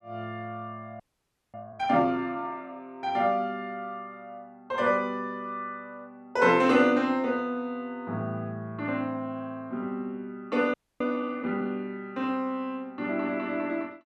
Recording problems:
audio freezing; at 1 s for 0.5 s and at 11 s

